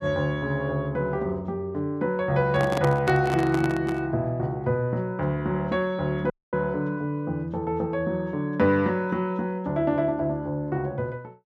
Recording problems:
microphone handling noise; from 2.5 to 4 s; peak +1 dB vs average level
dropout; at 6.5 s

